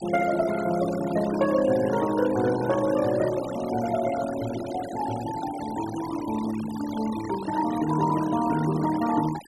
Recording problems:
denoising artefacts; signal-to-artefact ratio 13 dB

